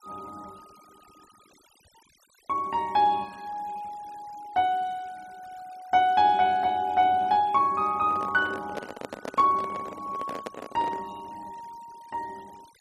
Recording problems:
noise reduction artefacts; signal-to-artefact ratio 27 dB
microphone handling noise; from 8 to 11 s; peak -5 dB vs average level

